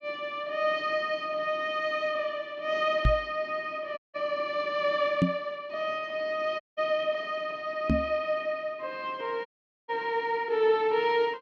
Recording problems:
microphone thump; at 3 s, at 5 s and at 8 s; peak +8 dB vs average level
audio cutting out; at 4 s, at 6.5 s and at 9.5 s

